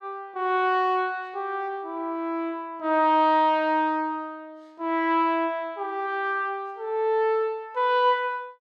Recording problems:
none

